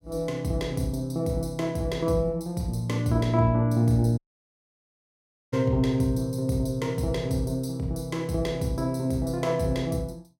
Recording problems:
dropout; at 4 s for 1.5 s

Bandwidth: 16.5 kHz